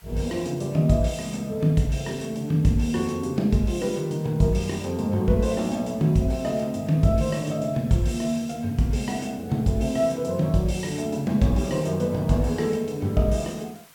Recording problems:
background hiss; slope 0 dB per octave, SNR 27 dB

